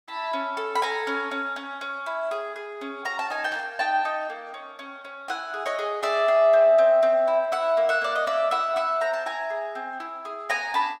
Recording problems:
burst of static; at 3.5 s; peak -13 dB vs average level

